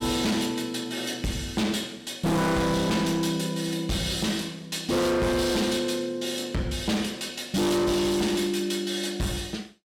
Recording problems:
distortion; hard clipping, signal-to-distortion ratio 6 dB

